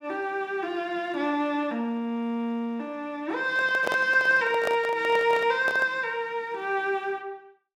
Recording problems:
microphone handling noise; from 3.5 to 6 s; peak 0 dB vs average level

